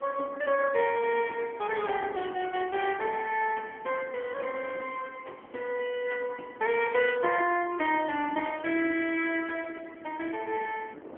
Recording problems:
phone line; 240 Hz to 3.1 kHz, AMR-NB
wind noise; below 560 Hz, SNR 19 dB

